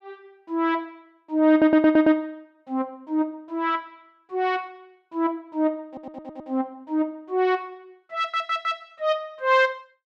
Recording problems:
audio stuttering; at 1.5 s, at 6 s and at 8 s

